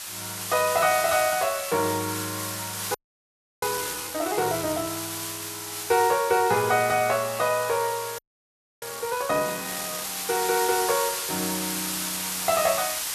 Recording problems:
hiss; slope +2 dB per octave, SNR 4 dB
audio freezing; at 3 s for 0.5 s and at 8 s for 0.5 s

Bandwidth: 13.5 kHz